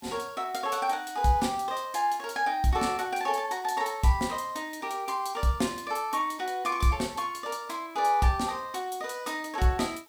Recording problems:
background hiss; slope +2 dB per octave, SNR 28 dB

